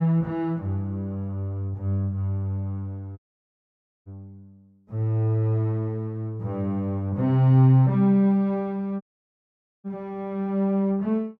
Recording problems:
audio cutting out; at 3 s for 1 s and at 9 s for 1 s

